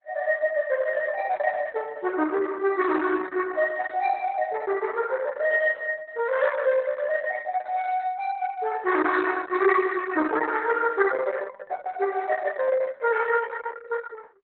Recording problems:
codec artefacts; Opus, log-spectral distance 4 dB, nothing above 4.1 kHz

